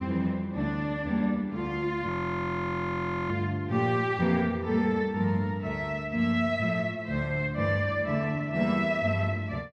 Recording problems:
frozen audio; at 2 s for 1 s

